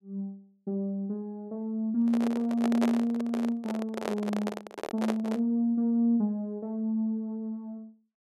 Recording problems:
handling noise; from 2 to 5.5 s; peak +2 dB vs average level

